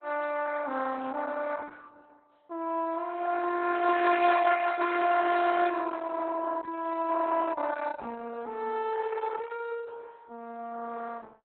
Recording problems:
lossy compression; Opus, log-spectral distance 4 dB, nothing above 3.9 kHz

